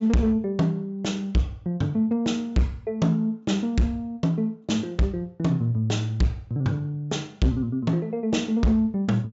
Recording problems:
treble cut off; nothing above 8 kHz
distortion; hard clipping, signal-to-distortion ratio 7 dB

